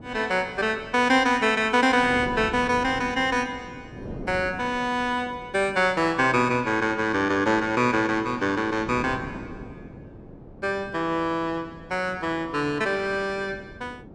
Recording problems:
wind noise; below 400 Hz, SNR 17 dB

